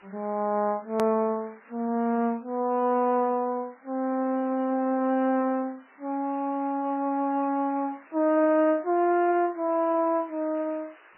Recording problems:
lossy compression; MP3, then MP3, log-spectral distance 4 dB, nothing above 13.1 kHz
background hiss; SNR 27 dB
hard cut with a click; at 1 s

